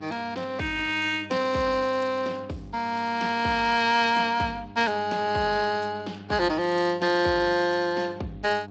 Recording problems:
lossy compression; Speex, log-spectral distance 4 dB, nothing above 7.6 kHz
hum; 50 Hz, harmonics up to 1.2 kHz, SNR 19 dB

